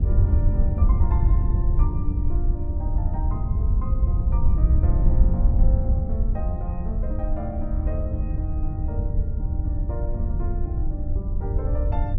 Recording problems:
wind on the microphone; below 82 Hz, SNR -12 dB

